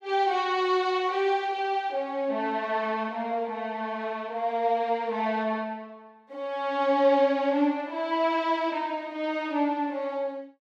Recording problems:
none

